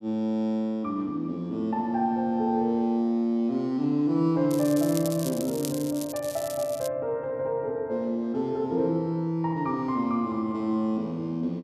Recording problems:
crackle; from 4.5 to 7 s; loose cable, SNR 12 dB

